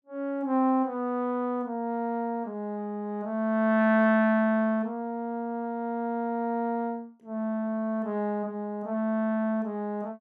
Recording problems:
none

